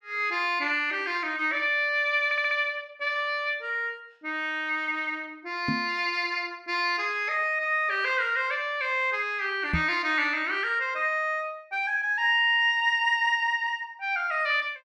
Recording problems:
stutter; at 2.5 s
microphone thump; at 5.5 s and at 9.5 s; peak +1 dB vs average level

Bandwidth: 12.5 kHz